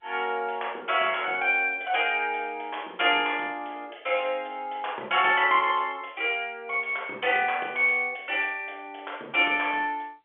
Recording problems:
phone line; 260 Hz to 3.4 kHz, G.711

